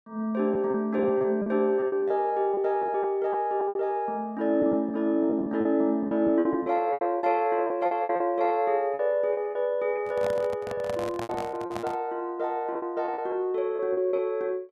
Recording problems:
packet loss; 12% of the sound replaced, filled with repeated pitch periods
microphone handling noise; from 10 to 12 s; peak -5 dB vs average level

